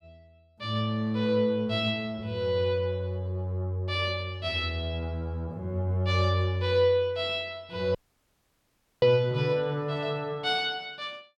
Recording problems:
audio cutting out; at 8 s for 1 s

